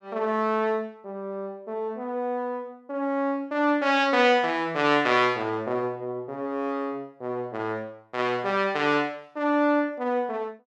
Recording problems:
none

